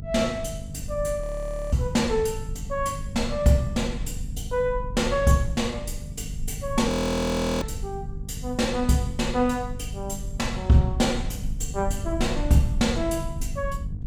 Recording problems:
electrical hum; 50 Hz, harmonics up to 500 Hz, SNR 14 dB
low-frequency rumble; below 74 Hz, SNR 10 dB
audio freezing; at 1 s for 0.5 s and at 7 s for 0.5 s

